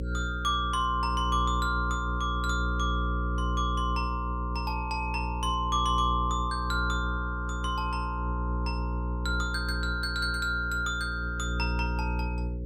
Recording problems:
electrical hum; 60 Hz, harmonics up to 540 Hz, SNR 2 dB

